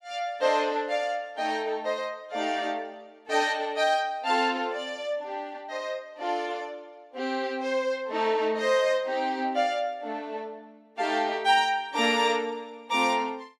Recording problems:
none

